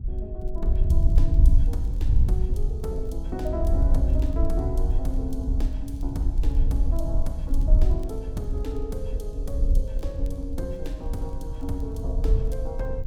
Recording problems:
wind noise; below 60 Hz, SNR -8 dB
crackling; vinyl, SNR 29 dB

